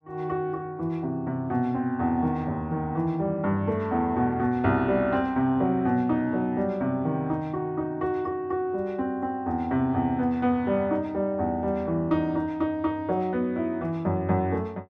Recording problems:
none

